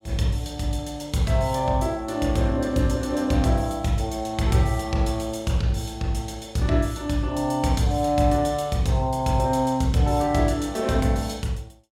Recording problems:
none

